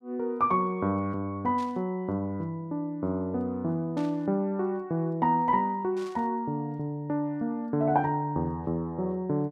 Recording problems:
burst of static; at 1.5 s, at 4 s and at 6 s; peak -15 dB vs average level

